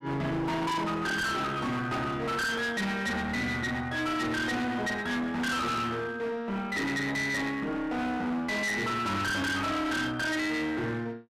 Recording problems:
distorted audio; hard clipping, uneven, signal-to-distortion ratio 5 dB

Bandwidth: 14 kHz